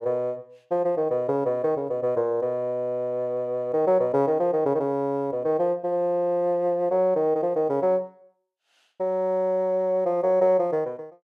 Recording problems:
none

